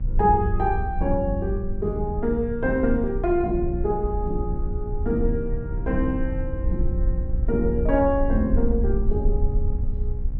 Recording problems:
hum; 60 Hz, harmonics up to 780 Hz, SNR 13 dB
rumble; below 60 Hz, SNR 4 dB

